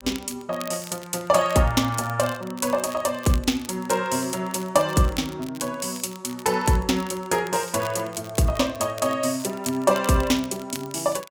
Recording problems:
crackling; vinyl, SNR 18 dB

